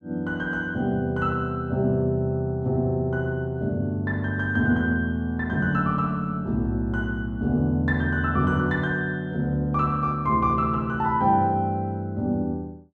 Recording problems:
none

